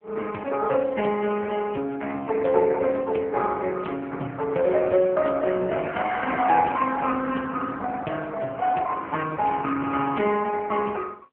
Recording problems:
phone line; 220 Hz to 3.2 kHz, AMR-NB

